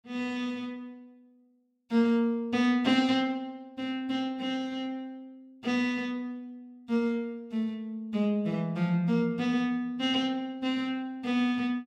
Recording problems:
none

